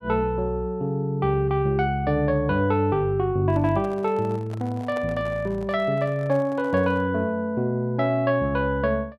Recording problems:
handling noise; from 3.5 to 7 s; peak -10 dB vs average level

